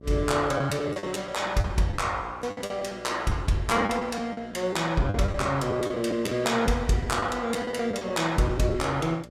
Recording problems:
hum; 60 Hz, harmonics up to 780 Hz, SNR 22 dB
lost packets; 11% of the sound replaced, filled with the last packet

